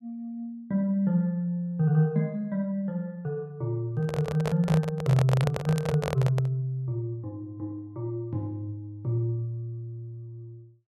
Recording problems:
microphone handling noise; from 4 to 6.5 s; peak +1 dB vs average level

